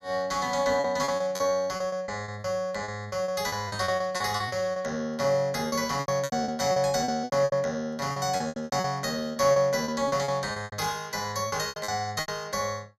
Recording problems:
lost packets; 16% of the sound replaced, filled with repeated pitch periods

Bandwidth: 13 kHz